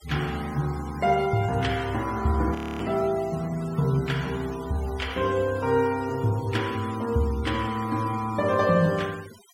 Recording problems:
noise reduction artefacts; signal-to-artefact ratio 18 dB
audio freezing; at 2.5 s

